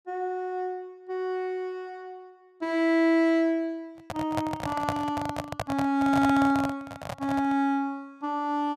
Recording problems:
handling noise; from 4 to 7.5 s; peak +2 dB vs average level

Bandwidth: 14.5 kHz